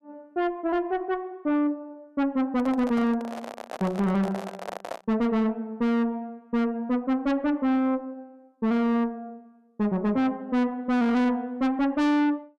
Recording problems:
distorted audio; soft clipping, signal-to-distortion ratio 7 dB
handling noise; from 2.5 to 5 s; peak -4 dB vs average level

